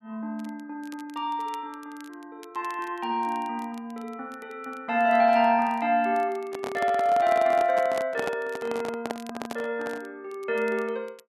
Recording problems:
crackle; vinyl, SNR 28 dB
microphone handling noise; from 6.5 to 10 s; peak -2 dB vs average level

